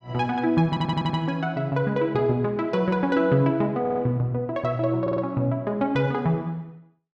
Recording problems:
audio stuttering; at 0.5 s, at 4 s and at 5 s

